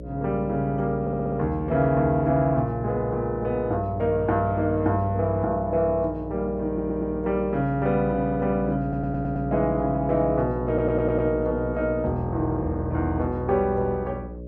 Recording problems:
hum; 60 Hz, harmonics up to 600 Hz, SNR 11 dB
stutter; 4 times, first at 1 s

